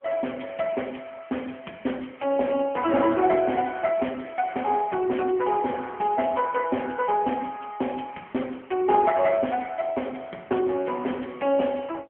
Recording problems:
phone line; 280 Hz to 3.1 kHz, AMR-NB

